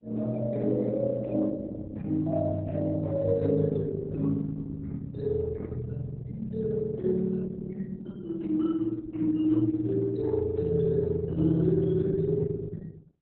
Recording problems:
codec artefacts; Opus, then Opus, log-spectral distance 2 dB, nothing above 4.1 kHz

